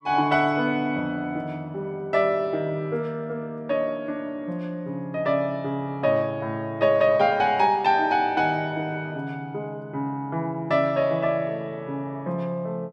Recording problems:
none

